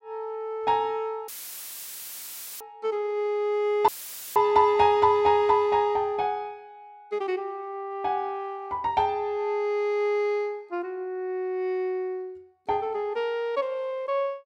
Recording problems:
dropout; at 1.5 s for 1.5 s and at 4 s; filled with static

